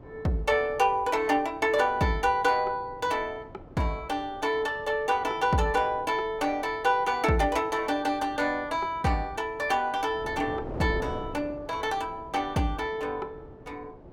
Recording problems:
wind on the microphone; below 530 Hz, SNR 18 dB

